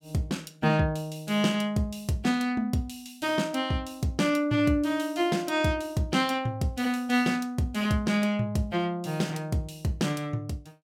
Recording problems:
none

